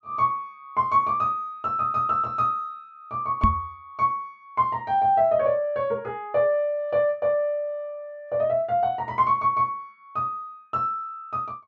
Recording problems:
microphone thump; at 3.5 s; peak +6 dB vs average level

